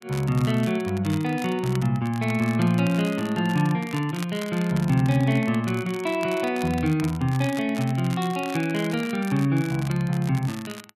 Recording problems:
crackling; vinyl, SNR 17 dB

